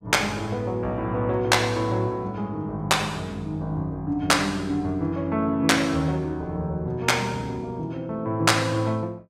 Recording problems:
none

